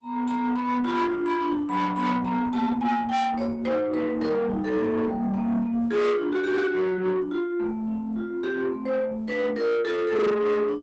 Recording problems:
codec artefacts; Opus, log-spectral distance 2 dB, nothing above 7.8 kHz
distortion; soft clipping, signal-to-distortion ratio 7 dB

